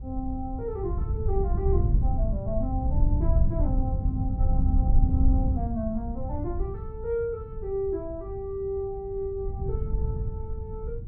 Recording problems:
wind noise; below 86 Hz, SNR -5 dB

